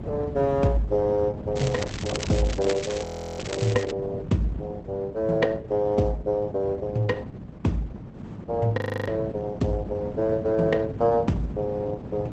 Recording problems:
codec artefacts; Opus, log-spectral distance 3 dB, nothing above 14.1 kHz
wind noise; below 240 Hz, SNR 10 dB
crackling; from 1.5 to 4 s; loose cable, SNR 11 dB
audio freezing; at 3 s and at 9 s

